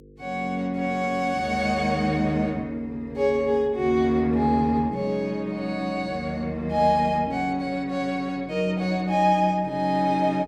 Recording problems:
mains hum; 50 Hz, harmonics up to 500 Hz, SNR 24 dB

